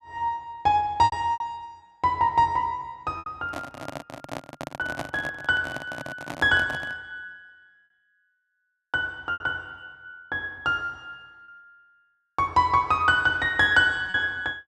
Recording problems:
lost packets; 4% of the sound replaced, filled with repeated pitch periods
microphone handling noise; from 3.5 to 7 s; peak -3 dB vs average level

